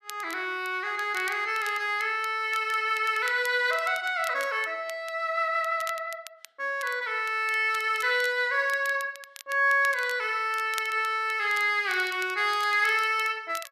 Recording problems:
crackling; vinyl, SNR 19 dB

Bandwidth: 14 kHz